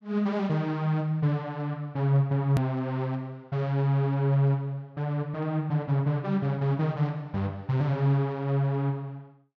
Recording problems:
edit click; at 2.5 s

